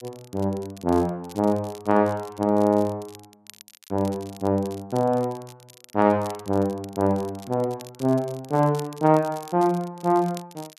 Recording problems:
crackling; vinyl, SNR 23 dB

